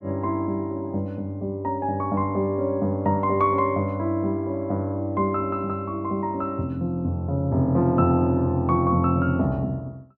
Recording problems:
none

